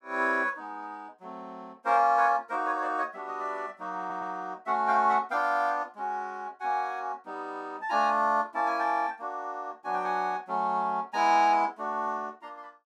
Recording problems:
stutter; at 4 s

